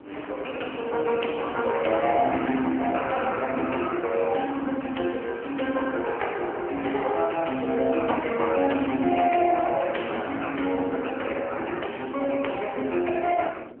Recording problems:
telephone audio; 220 Hz to 3.1 kHz, AMR-NB
wind on the microphone; below 490 Hz, SNR 19 dB

